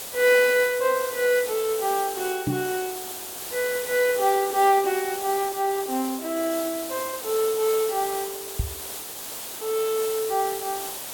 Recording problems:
background hiss; SNR 8 dB
microphone thump; at 2.5 s and at 8.5 s; peak +1 dB vs average level

